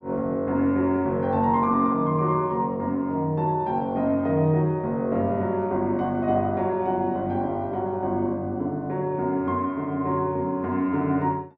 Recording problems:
none

